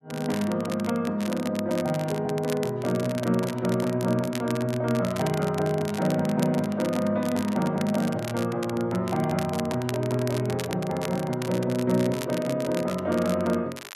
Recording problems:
crackle; vinyl, SNR 14 dB

